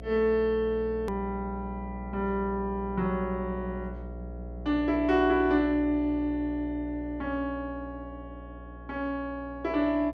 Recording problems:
hum; 60 Hz, harmonics up to 720 Hz, SNR 12 dB
edit click; at 1 s

